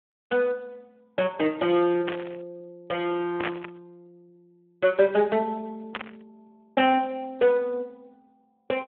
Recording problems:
telephone audio; 220 Hz to 3.2 kHz, Speex
burst of static; at 2 s, at 3.5 s and at 6 s; peak +1 dB vs average level

